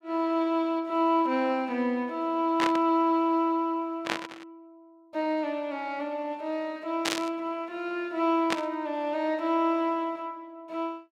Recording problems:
static burst; 4 times, first at 2.5 s; peak +4 dB vs average level

